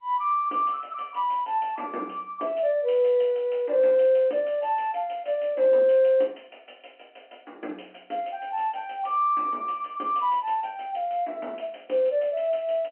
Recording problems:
phone line; 260 Hz to 3.1 kHz, G.711

